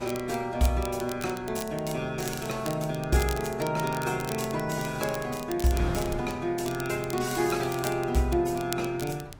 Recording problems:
codec artefacts; AAC, log-spectral distance 3 dB, nothing above 15.5 kHz
wind noise; below 460 Hz, SNR 15 dB
crackle; vinyl, SNR 13 dB

